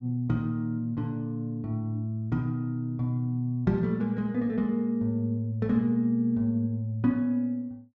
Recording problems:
none

